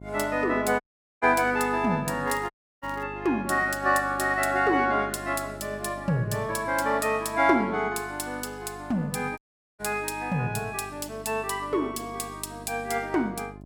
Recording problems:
hum; 50 Hz, harmonics up to 1 kHz, SNR 18 dB
audio cutting out; at 1 s, at 2.5 s and at 9.5 s
crackle; at 2.5 s; loose cable, SNR 27 dB

